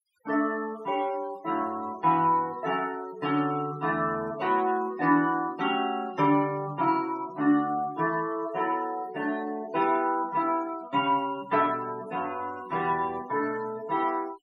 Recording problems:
noise reduction artefacts; signal-to-artefact ratio 21 dB

